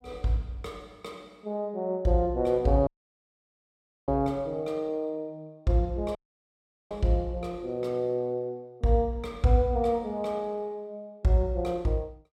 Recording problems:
audio cutting out; at 3 s for 1 s and at 6 s for 1 s

